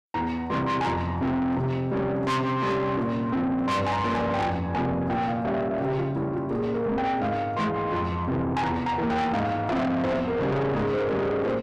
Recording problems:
distorted audio; soft clipping, signal-to-distortion ratio 7 dB

